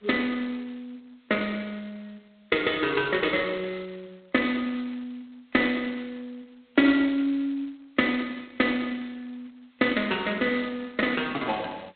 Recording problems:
phone line; 320 Hz to 3.5 kHz, G.726

